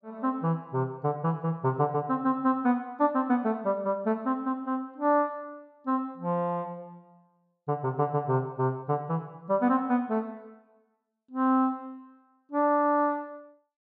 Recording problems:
none

